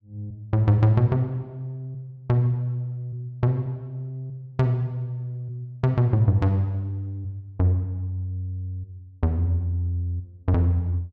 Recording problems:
none

